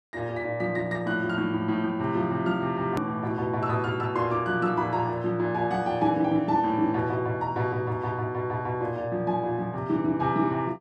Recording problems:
hard cut with a click; at 3 s

